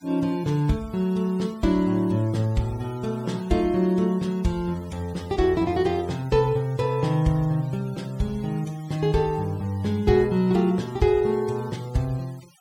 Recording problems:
noise reduction artefacts; signal-to-artefact ratio 24 dB

